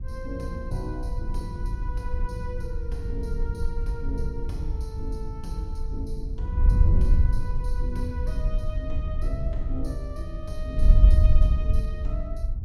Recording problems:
wind noise; below 66 Hz, SNR -10 dB

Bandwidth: 16.5 kHz